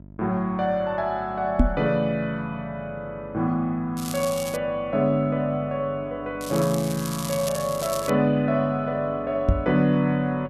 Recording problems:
hum; 50 Hz, harmonics up to 700 Hz, SNR 20 dB
microphone thump; at 1.5 s and at 9.5 s; peak +9 dB vs average level
crackling; at 4 s and from 6.5 to 8 s; loose cable, SNR 10 dB

